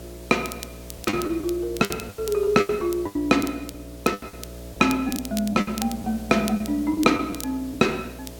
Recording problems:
electrical hum; 60 Hz, harmonics up to 660 Hz, SNR 16 dB
background hiss; slope -2 dB per octave, SNR 21 dB
crackle; vinyl, SNR 15 dB
lost packets; 11% of the sound replaced, filled with the last packet

